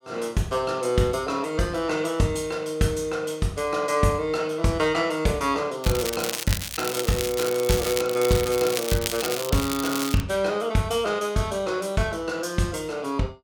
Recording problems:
crackling; from 6 to 10 s; loose cable, SNR 5 dB

